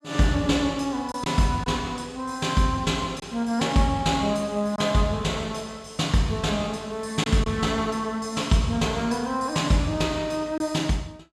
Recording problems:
packet loss; 1.4% of the sound replaced, filled with silence

